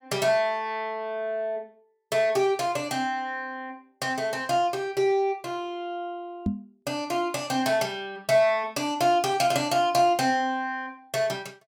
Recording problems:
microphone thump; at 6.5 s; peak +2 dB vs average level

